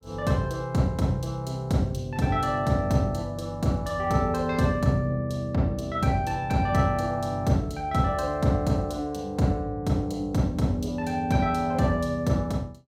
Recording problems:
none

